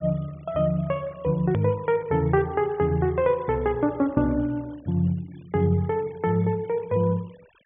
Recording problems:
treble cut off; nothing above 3.5 kHz
noise reduction artefacts; signal-to-artefact ratio 27 dB
hard cut with a click; at 1.5 s

